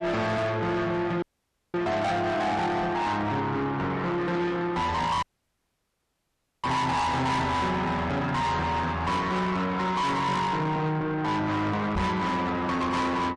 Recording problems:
lossy codec; MP3, log-spectral distance 2 dB, nothing above 10.4 kHz
distortion; soft clipping, signal-to-distortion ratio 7 dB
dropout; at 1 s for 0.5 s and at 5 s for 1.5 s
knock on the microphone; at 12 s; peak +5 dB vs average level

